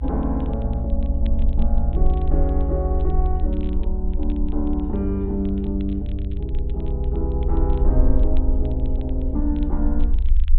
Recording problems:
treble cut off; nothing above 4 kHz
low-frequency rumble; below 66 Hz, SNR -3 dB
crackling; vinyl, SNR 28 dB

